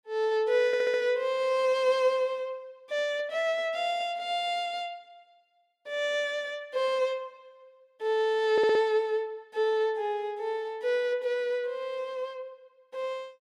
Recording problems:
audio stuttering; at 0.5 s and at 8.5 s

